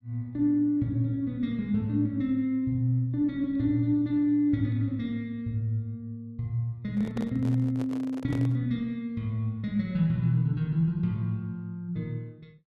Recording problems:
microphone handling noise; from 7 to 8.5 s; peak -6 dB vs average level

